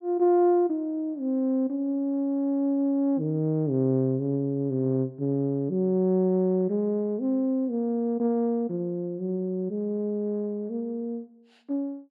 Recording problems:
none

